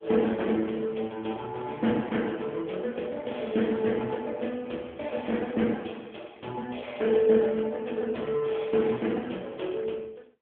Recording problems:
telephone audio; 150 Hz to 3.5 kHz, AMR-NB

